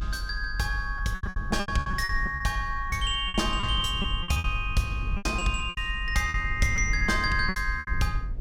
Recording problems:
rumble; below 72 Hz, SNR 6 dB
lost packets; 14% of the sound replaced, filled with repeated pitch periods

